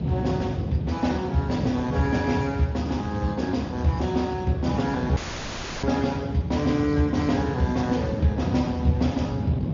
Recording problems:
treble missing; nothing above 6.9 kHz
lossy codec; Speex, log-spectral distance 3 dB
rumble; below 210 Hz, SNR 8 dB
wind noise; below 270 Hz, SNR 7 dB
dropout; at 5 s for 0.5 s

